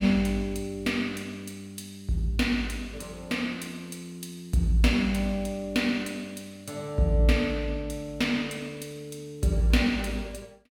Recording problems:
none

